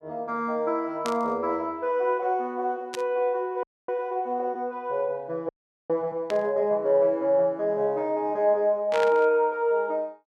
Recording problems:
burst of static; 4 times, first at 1 s; peak -4 dB vs average level
frozen audio; at 3.5 s and at 5.5 s

